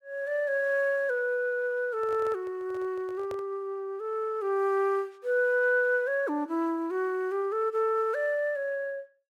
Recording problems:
microphone handling noise; from 2 to 3.5 s; peak -9 dB vs average level

